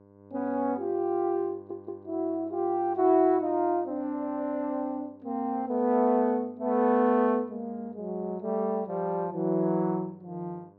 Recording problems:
electrical hum; 50 Hz, harmonics up to 1.2 kHz, SNR 27 dB
stutter; at 1.5 s

